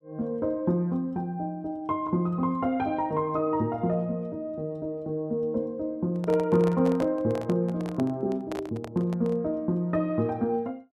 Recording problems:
handling noise; from 6 to 9.5 s; peak -5 dB vs average level

